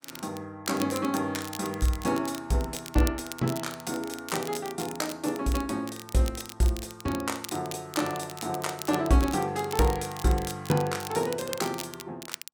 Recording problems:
crackle; vinyl, SNR 12 dB

